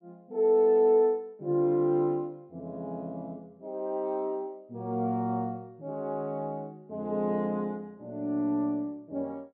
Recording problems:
low-pass filter; nothing above 4.2 kHz

